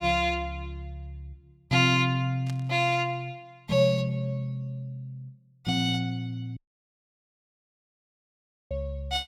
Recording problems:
burst of static; at 2.5 s; peak -12 dB vs average level
audio cutting out; at 6.5 s for 2 s

